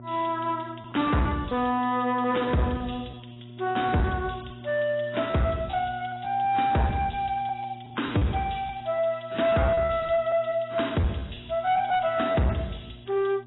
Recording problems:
lossy codec; AAC, log-spectral distance 8 dB, nothing above 3.9 kHz
distortion; soft clipping, signal-to-distortion ratio 11 dB
hum; 60 Hz, harmonics up to 960 Hz, SNR 19 dB
packet loss; 7% of the sound replaced, filled with repeated pitch periods

